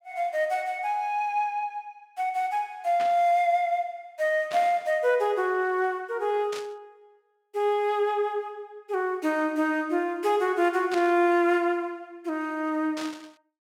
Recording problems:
static burst; 5 times, first at 3 s; peak -7 dB vs average level

